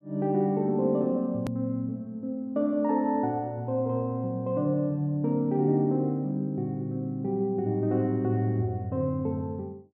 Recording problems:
edit click; at 1.5 s

